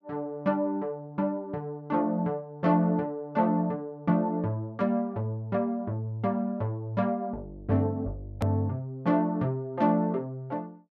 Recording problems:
click at an edit; at 8.5 s

